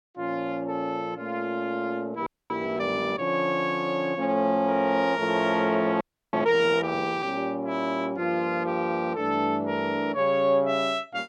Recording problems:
audio freezing; at 2.5 s and at 6 s

